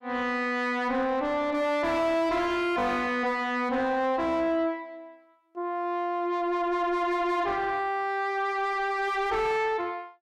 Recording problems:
distortion; soft clipping, signal-to-distortion ratio 6 dB

